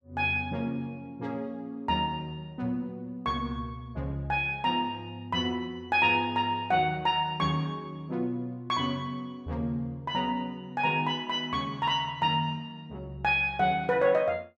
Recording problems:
none

